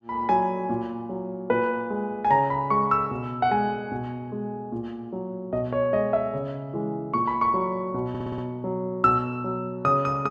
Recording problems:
audio stuttering; at 8 s

